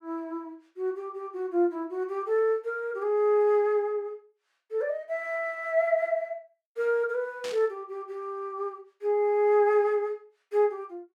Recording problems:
burst of static; at 7.5 s; peak -8 dB vs average level

